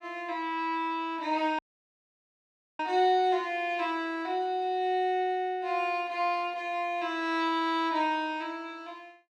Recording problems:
audio cutting out; at 1.5 s for 1 s

